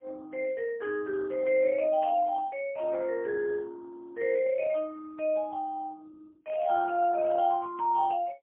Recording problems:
phone line; 320 Hz to 3.7 kHz, AMR-NB, then MP3
burst of static; at 2 s and at 6.5 s; peak -17 dB vs average level

